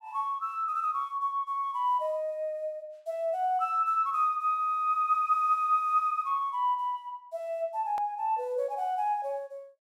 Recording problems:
hard cut with a click; at 8 s

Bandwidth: 16 kHz